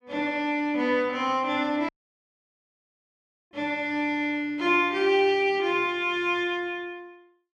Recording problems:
dropout; at 2 s for 1.5 s

